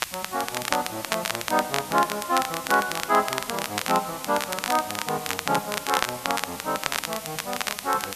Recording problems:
background hiss; slope +2 dB per octave, SNR 10 dB
crackling; vinyl, SNR 3 dB

